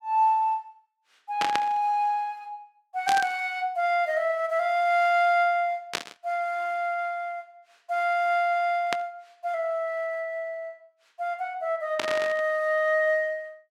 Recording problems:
static burst; 5 times, first at 1.5 s; peak +2 dB vs average level

